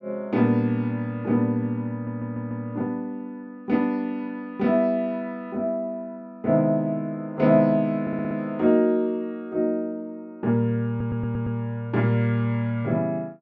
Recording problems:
stutter; at 2 s, at 8 s and at 11 s

